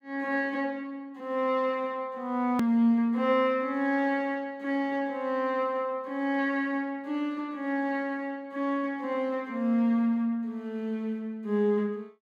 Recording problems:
click at an edit; at 2.5 s

